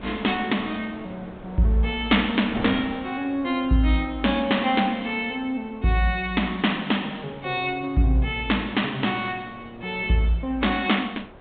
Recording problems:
treble cut off; nothing above 4 kHz
wind on the microphone; below 840 Hz, SNR 19 dB

